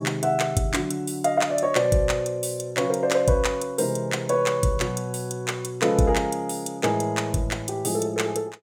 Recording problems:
none

